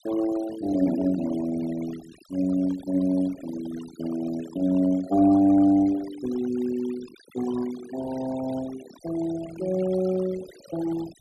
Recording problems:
denoising artefacts; signal-to-artefact ratio 17 dB

